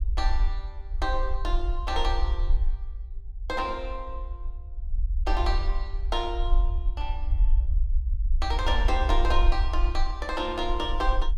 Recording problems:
rumble; below 50 Hz, strongest tone 24 Hz, SNR -2 dB

